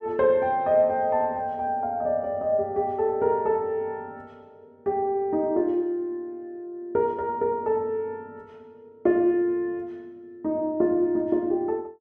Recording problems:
none

